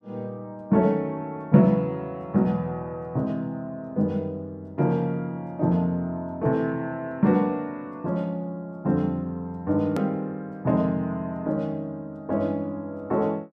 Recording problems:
hard cut with a click; at 10 s

